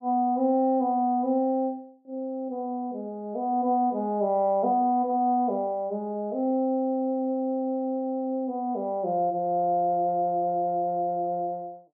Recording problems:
none

